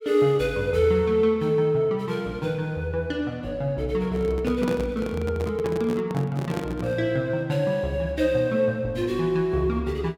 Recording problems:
handling noise; from 4 to 7 s; peak -1 dB vs average level

